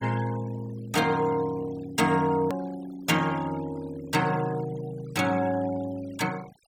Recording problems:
noise reduction artefacts; signal-to-artefact ratio 19 dB
hard cut with a click; at 2.5 s

